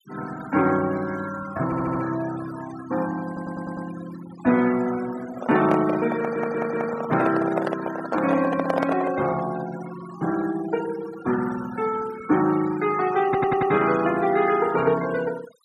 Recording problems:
noise reduction artefacts; signal-to-artefact ratio 15 dB
stutter; 4 times, first at 1.5 s
handling noise; from 5.5 to 9.5 s; peak +2 dB vs average level

